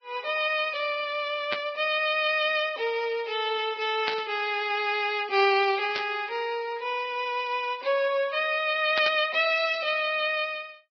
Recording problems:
codec artefacts; Vorbis, log-spectral distance 4 dB, nothing above 5.2 kHz
burst of static; 4 times, first at 1.5 s; peak -1 dB vs average level

